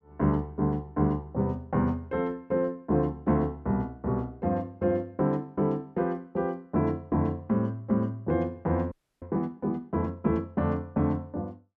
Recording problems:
audio freezing; at 9 s

